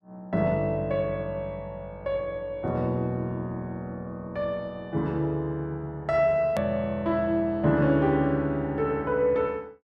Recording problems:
hard cut with a click; at 6.5 s

